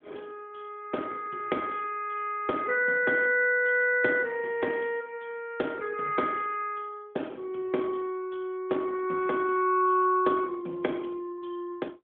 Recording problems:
telephone audio; 240 Hz to 3.3 kHz, AMR-NB

